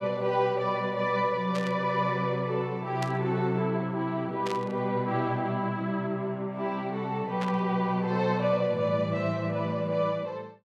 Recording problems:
static burst; 4 times, first at 1.5 s; peak -5 dB vs average level

